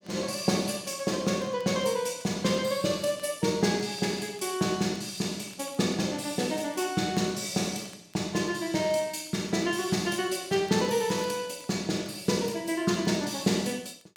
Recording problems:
crackle; vinyl, SNR 29 dB

